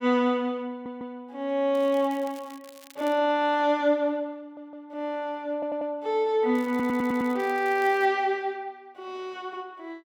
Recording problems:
audio stuttering; 4 times, first at 0.5 s
crackling; from 2 to 3 s and from 6.5 to 8 s; loose cable, SNR 24 dB

